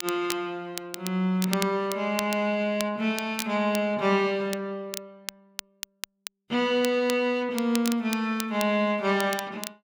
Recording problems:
crackling; vinyl, SNR 11 dB

